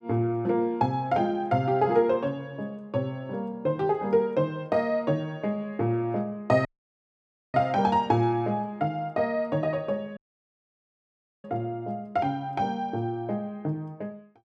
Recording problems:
dropout; at 6.5 s for 1 s and at 10 s for 1.5 s

